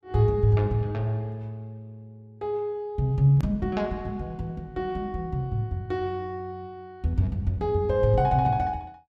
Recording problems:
hard cut with a click; at 3.5 s

